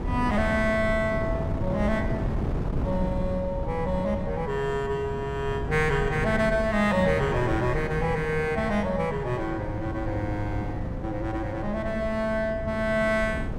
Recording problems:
wind noise; below 260 Hz, SNR 5 dB

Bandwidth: 16 kHz